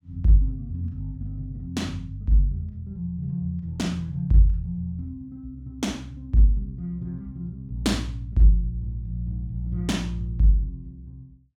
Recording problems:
none

